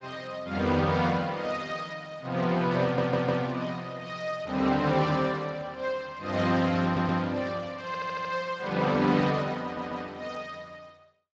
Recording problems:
lossy codec; Speex, log-spectral distance 4 dB
audio stuttering; 4 times, first at 3 s

